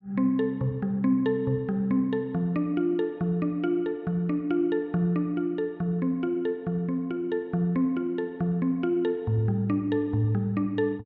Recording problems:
none

